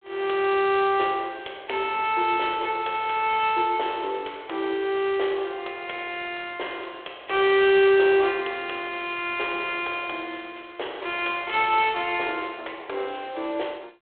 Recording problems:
telephone audio; 300 Hz to 3.5 kHz, G.726

